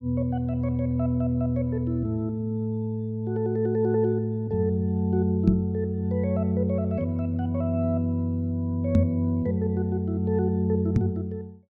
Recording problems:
microphone thump; at 5.5 s, at 9 s and at 11 s; peak +8 dB vs average level

